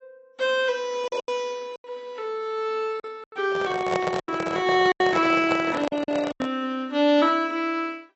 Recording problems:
lossy compression; AAC, log-spectral distance 2 dB, nothing above 7.3 kHz
packet loss; 8% of the sound replaced, filled with silence
handling noise; from 3.5 to 6.5 s; peak +1 dB vs average level

